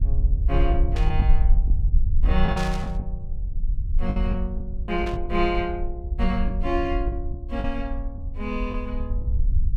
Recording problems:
low-frequency rumble; below 56 Hz, SNR -2 dB
lost packets; 6% of the sound replaced, filled with the last packet
burst of static; at 1 s, at 2.5 s and at 5 s; peak -3 dB vs average level

